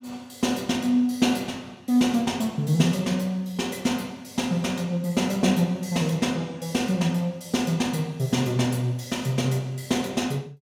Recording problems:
none

